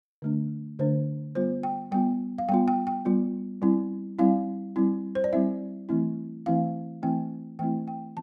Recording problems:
none

